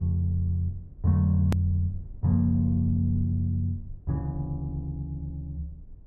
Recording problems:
low-frequency rumble; below 64 Hz, SNR 19 dB
edit click; at 1.5 s

